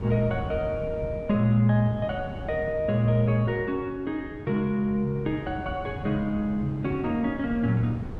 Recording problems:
wind on the microphone; below 260 Hz, SNR 12 dB

